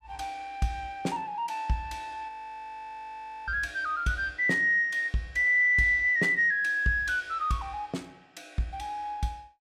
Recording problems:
audio freezing; at 2.5 s for 1 s

